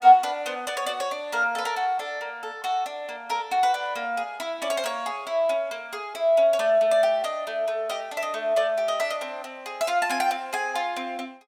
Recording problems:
none

